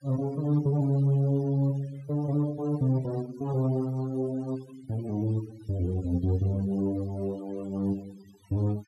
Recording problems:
denoising artefacts; signal-to-artefact ratio 23 dB

